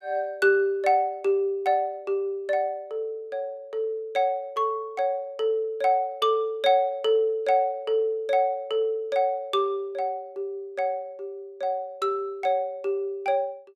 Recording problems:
none

